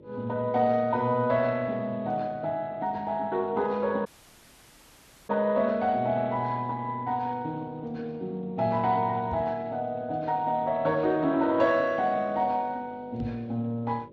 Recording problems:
lossy codec; Speex, log-spectral distance 2 dB
hum; 50 Hz, harmonics up to 600 Hz, SNR 24 dB
audio cutting out; at 4 s for 1 s
knock on the microphone; at 9.5 s and at 13 s; peak -3 dB vs average level

